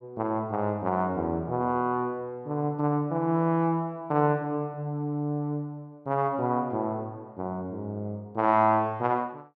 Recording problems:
none

